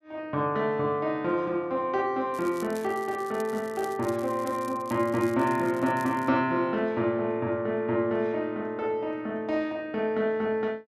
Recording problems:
crackling; from 2.5 to 6.5 s; loose cable, SNR 21 dB

